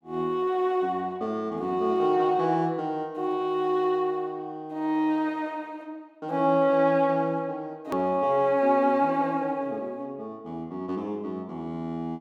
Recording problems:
hard cut with a click; at 8 s

